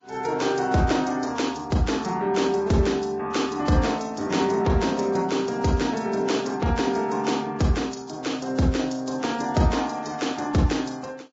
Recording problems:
lossy codec; Vorbis, log-spectral distance 4 dB, nothing above 7.3 kHz

